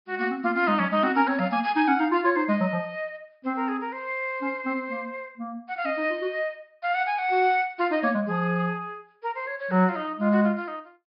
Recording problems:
treble missing; nothing above 5.5 kHz

